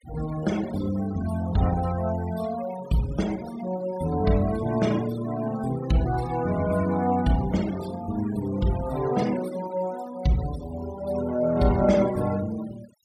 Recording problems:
denoising artefacts; signal-to-artefact ratio 16 dB

